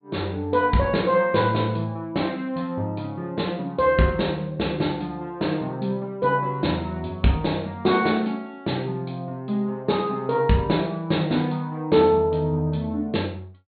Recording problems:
treble cut off; nothing above 4.4 kHz

